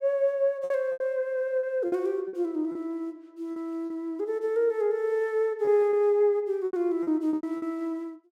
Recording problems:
lost packets; 9% of the sound replaced, filled with repeated pitch periods

